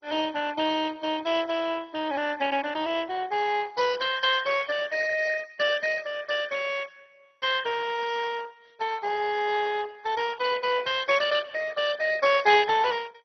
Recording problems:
codec artefacts; Speex, then MP2, log-spectral distance 6 dB, nothing above 6 kHz

